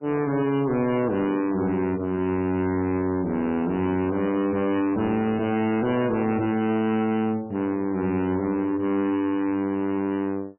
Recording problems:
lossy codec; MP3, then MP3, log-spectral distance 2 dB, nothing above 3 kHz
distortion; soft clipping, signal-to-distortion ratio 5 dB

